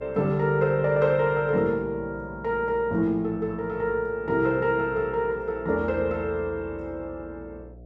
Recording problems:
hum; 60 Hz, harmonics up to 720 Hz, SNR 21 dB

